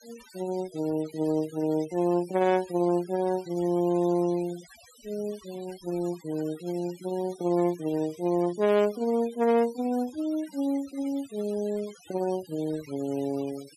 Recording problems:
denoising artefacts; signal-to-artefact ratio 20 dB

